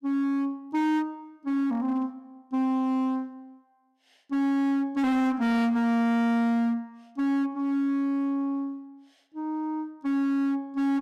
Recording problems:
distortion; hard clipping, signal-to-distortion ratio 7 dB

